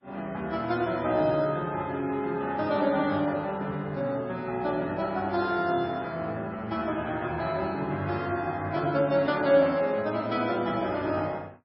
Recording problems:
lossy compression; MP3, log-spectral distance 2 dB, nothing above 5 kHz

